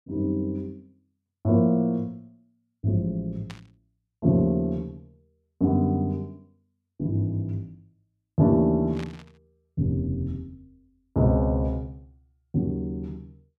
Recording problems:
static burst; at 3.5 s and at 9 s; peak -12 dB vs average level

